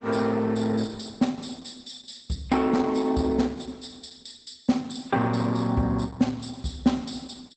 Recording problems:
lossy codec; Opus, log-spectral distance 6 dB, nothing above 8.2 kHz

